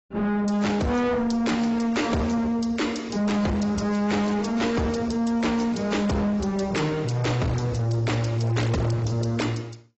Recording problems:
lossy codec; AAC, log-spectral distance 3 dB, nothing above 7.8 kHz
distortion; soft clipping, signal-to-distortion ratio 7 dB

